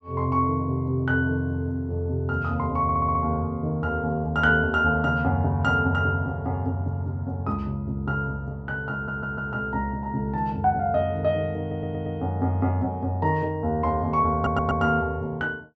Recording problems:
audio stuttering; 4 times, first at 3 s

